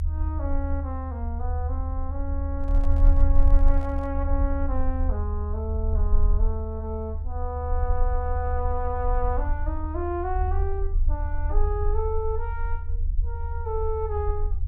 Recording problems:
low-frequency rumble; below 76 Hz, SNR -5 dB
handling noise; from 2.5 to 4 s; peak -8 dB vs average level

